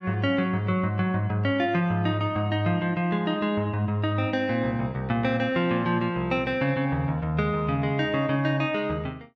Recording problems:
none

